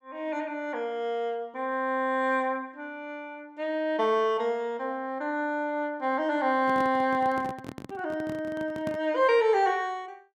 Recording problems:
handling noise; from 6.5 to 9 s; peak -4 dB vs average level

